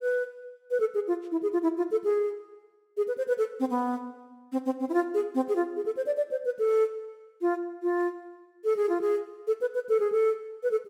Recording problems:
none

